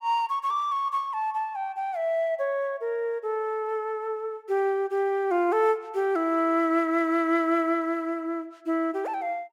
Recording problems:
none

